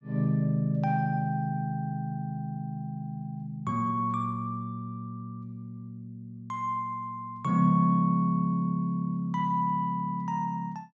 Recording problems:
none

